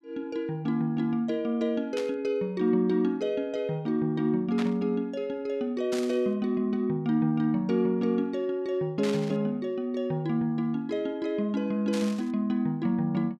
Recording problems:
static burst; 5 times, first at 2 s; peak -6 dB vs average level

